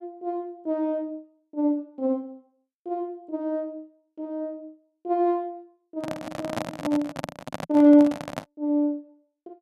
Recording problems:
microphone handling noise; from 6 to 8.5 s; peak 0 dB vs average level

